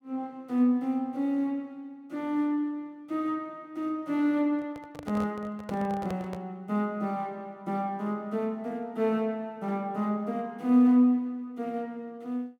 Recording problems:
microphone handling noise; from 4.5 to 6.5 s; peak -6 dB vs average level

